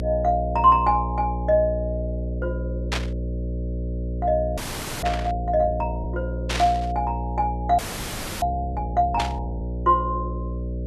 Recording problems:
hum; 60 Hz, harmonics up to 600 Hz, SNR 6 dB
static burst; 4 times, first at 3 s; peak +1 dB vs average level
frozen audio; at 4.5 s and at 8 s for 0.5 s

